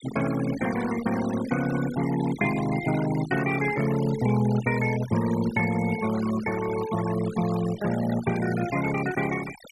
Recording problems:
denoising artefacts; signal-to-artefact ratio 12 dB

